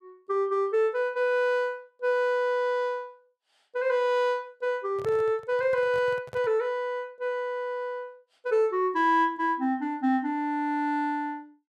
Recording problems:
handling noise; from 5 to 6.5 s; peak -9 dB vs average level

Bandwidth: 13.5 kHz